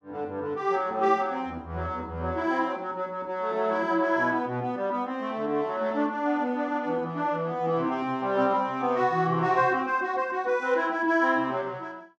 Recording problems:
none

